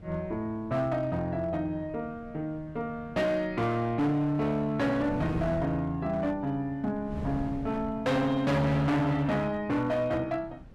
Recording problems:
distorted audio; hard clipping, signal-to-distortion ratio 8 dB
wind noise; below 250 Hz, SNR 15 dB

